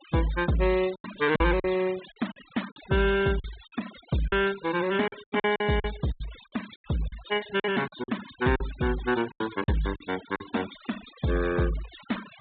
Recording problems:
low-pass filter; nothing above 4 kHz
noise reduction artefacts; signal-to-artefact ratio 15 dB
lost packets; 9% of the sound replaced, filled with silence

